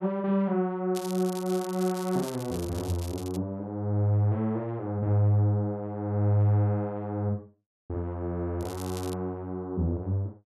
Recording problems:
crackle; from 1 to 3.5 s and at 8.5 s; loose cable, SNR 16 dB

